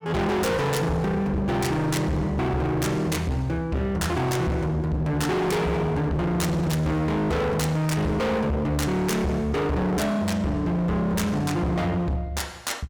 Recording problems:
distortion; hard clipping, signal-to-distortion ratio 6 dB

